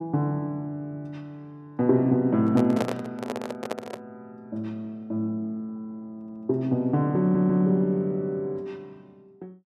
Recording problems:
handling noise; from 2.5 to 4 s; peak +2 dB vs average level
audio stuttering; at 6 s and at 7 s

